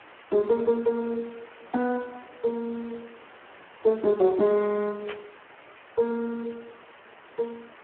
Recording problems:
telephone audio; 300 Hz to 2.1 kHz, Speex
hiss; SNR 21 dB
static burst; at 5 s; peak -7 dB vs average level

